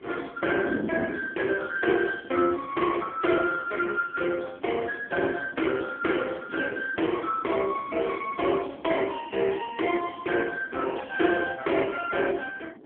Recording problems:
telephone audio; 240 Hz to 3.3 kHz, AMR-NB
wind on the microphone; below 390 Hz, SNR 15 dB

